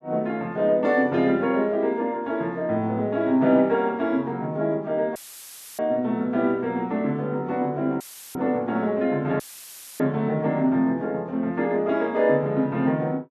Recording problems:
audio cutting out; at 5 s for 0.5 s, at 8 s and at 9.5 s for 0.5 s; filled with static

